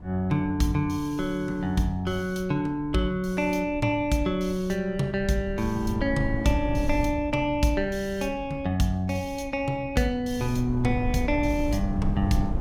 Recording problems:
wind noise; below 120 Hz, SNR 9 dB

